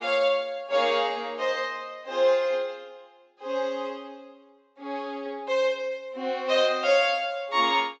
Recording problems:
low-pass filter; nothing above 8 kHz

